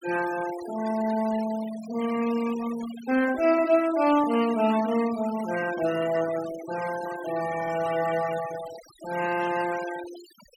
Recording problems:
denoising artefacts; signal-to-artefact ratio 14 dB

